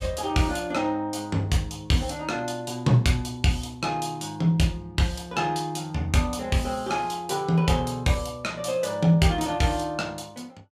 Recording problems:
none

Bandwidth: 15.5 kHz